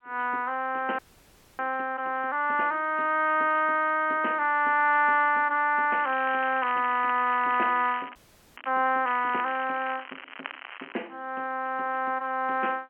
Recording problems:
telephone audio; 240 Hz to 3.2 kHz, G.711
audio freezing; at 1 s for 0.5 s and at 8 s
crackle; from 6 to 8.5 s and from 9 to 11 s; loose cable, SNR 16 dB

